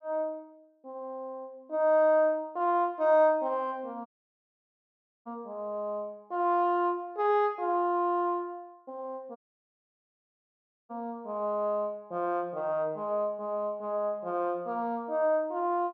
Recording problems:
dropout; at 4 s for 1 s and at 9.5 s for 1.5 s

